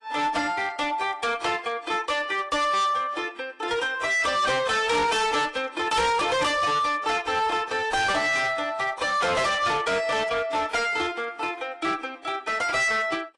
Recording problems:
codec artefacts; AAC, log-spectral distance 3 dB, nothing above 10.4 kHz
distorted audio; hard clipping, signal-to-distortion ratio 7 dB

